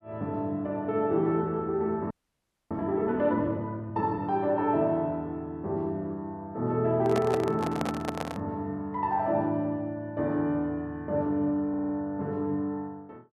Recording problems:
frozen audio; at 2 s for 0.5 s
handling noise; from 7 to 8.5 s; peak +1 dB vs average level
stutter; at 12 s

